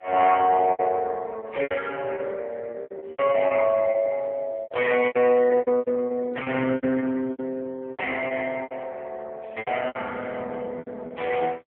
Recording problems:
telephone audio; 220 Hz to 3 kHz, AMR-NB
packet loss; 15% of the sound replaced, filled with repeated pitch periods

